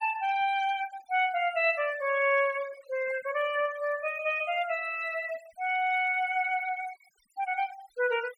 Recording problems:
noise reduction artefacts; signal-to-artefact ratio 18 dB

